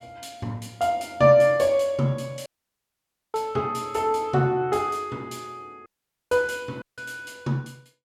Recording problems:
dropout; at 2.5 s for 1 s, at 6 s and at 7 s

